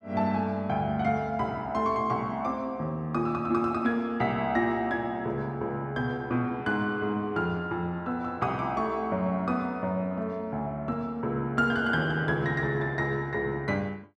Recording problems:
none

